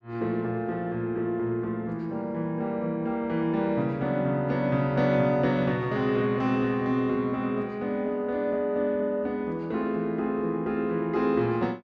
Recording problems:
none

